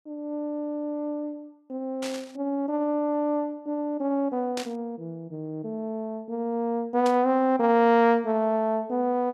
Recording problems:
static burst; at 2 s, at 4.5 s and at 7 s; peak -5 dB vs average level

